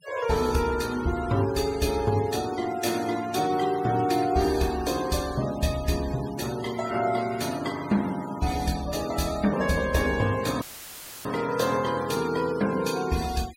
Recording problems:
denoising artefacts; signal-to-artefact ratio 16 dB
audio cutting out; at 11 s for 0.5 s; filled with static

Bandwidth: 16 kHz